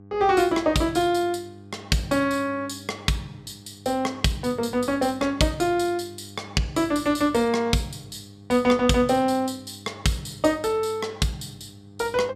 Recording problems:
hum; 50 Hz, harmonics up to 800 Hz, SNR 22 dB

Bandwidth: 14.5 kHz